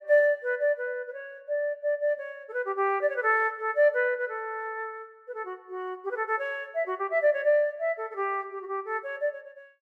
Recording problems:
none

